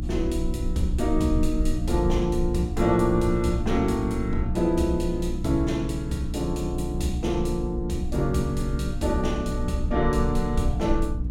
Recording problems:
hum; 60 Hz, harmonics up to 300 Hz, SNR 6 dB
low-frequency rumble; below 52 Hz, strongest tone 22 Hz, SNR 8 dB

